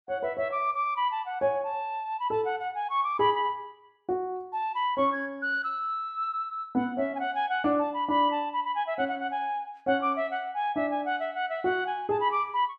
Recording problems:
none

